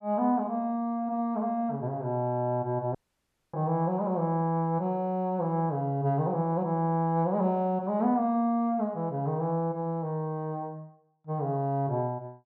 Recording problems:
audio cutting out; at 3 s for 0.5 s

